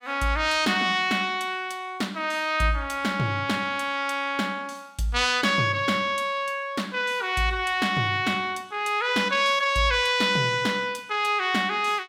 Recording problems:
none

